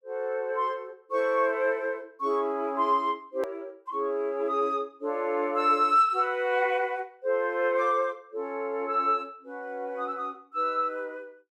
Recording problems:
edit click; at 3.5 s

